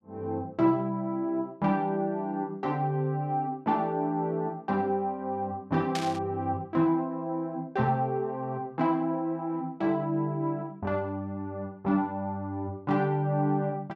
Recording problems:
burst of static; at 6 s; peak -1 dB vs average level

